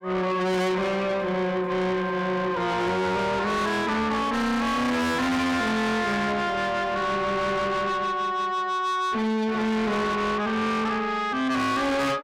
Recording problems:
distortion; soft clipping, signal-to-distortion ratio 6 dB

